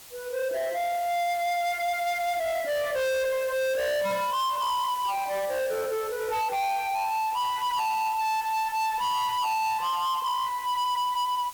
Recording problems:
distortion; soft clipping, signal-to-distortion ratio 7 dB
hiss; slope 0 dB per octave, SNR 16 dB

